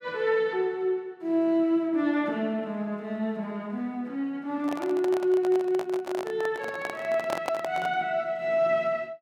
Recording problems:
microphone handling noise; from 4.5 to 8 s; peak +1 dB vs average level

